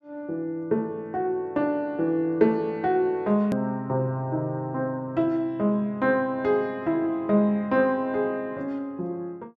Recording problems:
hard cut with a click; at 3.5 s

